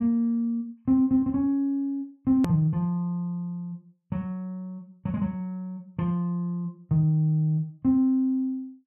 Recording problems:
hard cut with a click; at 2.5 s

